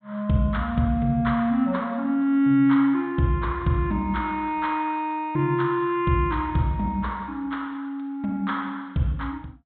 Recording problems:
treble missing; nothing above 4 kHz

